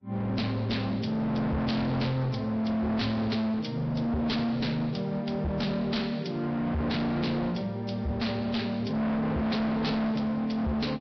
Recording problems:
lossy compression; Vorbis, log-spectral distance 3 dB, nothing above 5.3 kHz
distorted audio; hard clipping, signal-to-distortion ratio 6 dB

